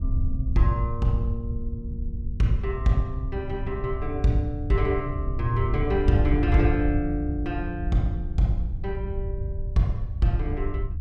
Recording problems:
wind on the microphone; below 86 Hz, SNR 4 dB

